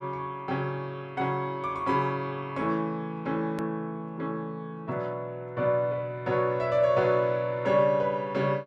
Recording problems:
click at an edit; at 3.5 s

